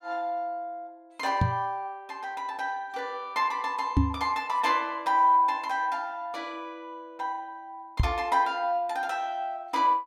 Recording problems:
microphone bump; at 1.5 s, at 4 s and at 8 s; peak +8 dB vs average level

